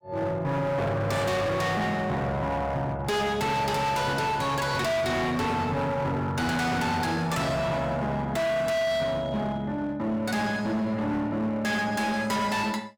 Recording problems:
distorted audio; hard clipping, uneven, signal-to-distortion ratio 7 dB

